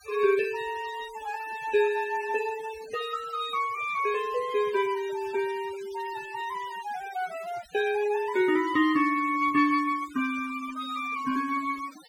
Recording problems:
noise reduction artefacts; signal-to-artefact ratio 18 dB

